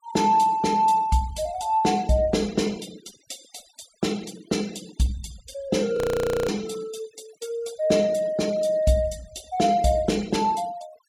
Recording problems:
denoising artefacts; signal-to-artefact ratio 22 dB
audio freezing; at 6 s for 0.5 s

